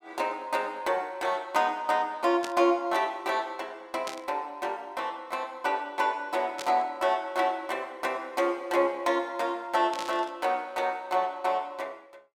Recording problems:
static burst; 4 times, first at 2.5 s; peak -4 dB vs average level

